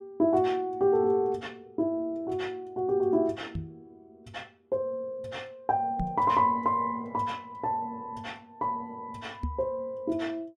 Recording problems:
microphone bump; at 3.5 s, at 6 s and at 9.5 s; peak 0 dB vs average level

